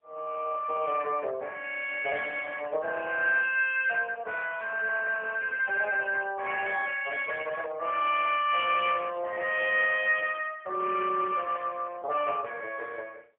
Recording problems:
phone line; 320 Hz to 3.3 kHz, AMR-NB, then MP3

